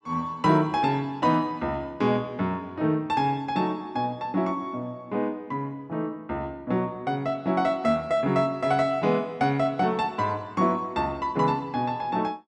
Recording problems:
none

